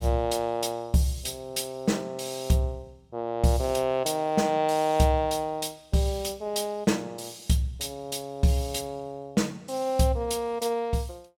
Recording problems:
none

